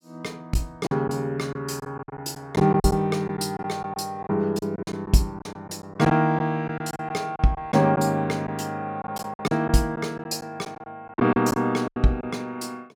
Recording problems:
packet loss; 10% of the sound replaced, filled with silence

